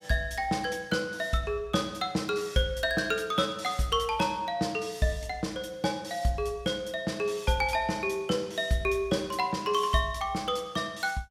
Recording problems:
none

